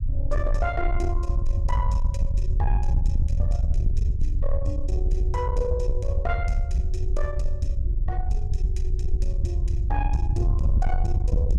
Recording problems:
distorted audio; soft clipping, signal-to-distortion ratio 10 dB
rumble; below 70 Hz, SNR -7 dB

